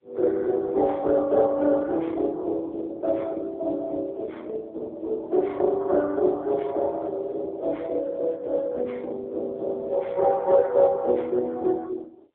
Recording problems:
phone line; 300 Hz to 2 kHz, AMR-NB

